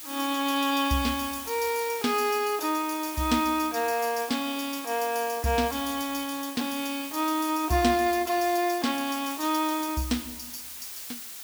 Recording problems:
hiss; slope +2 dB per octave, SNR 11 dB

